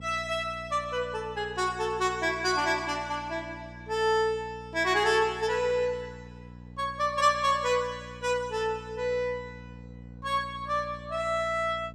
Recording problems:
electrical hum; 60 Hz, harmonics up to 780 Hz, SNR 18 dB

